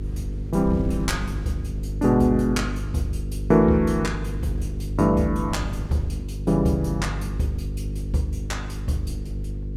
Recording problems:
electrical hum; 50 Hz, harmonics up to 500 Hz, SNR 7 dB
wind on the microphone; below 130 Hz, SNR 15 dB

